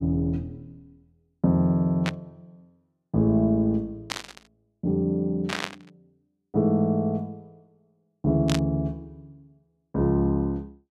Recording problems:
static burst; 4 times, first at 2 s; peak 0 dB vs average level

